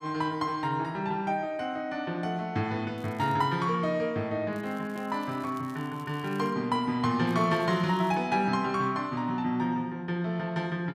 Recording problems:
crackle; at 3 s, from 4.5 to 6.5 s and at 7.5 s; loose cable, SNR 27 dB

